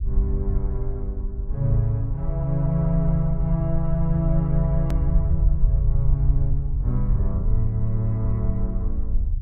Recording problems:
rumble; below 62 Hz, SNR 1 dB
click at an edit; at 5 s

